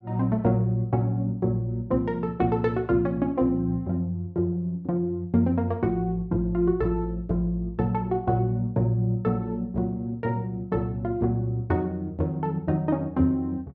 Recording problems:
none

